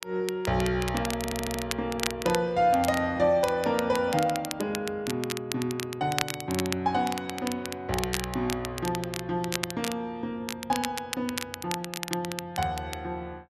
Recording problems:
crackling; vinyl, SNR 7 dB
stutter; at 1 s

